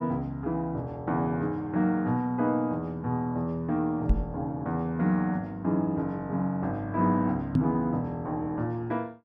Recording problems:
microphone thump; at 4 s and at 7.5 s; peak +8 dB vs average level

